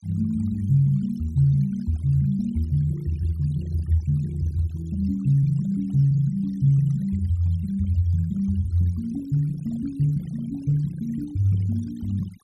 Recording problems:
denoising artefacts; signal-to-artefact ratio 26 dB

